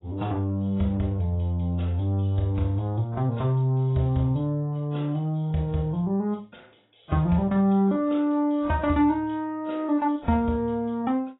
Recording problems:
lossy compression; AAC, log-spectral distance 2 dB, nothing above 3.8 kHz

